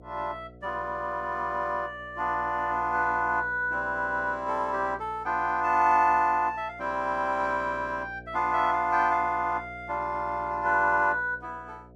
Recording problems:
electrical hum; 60 Hz, harmonics up to 720 Hz, SNR 21 dB

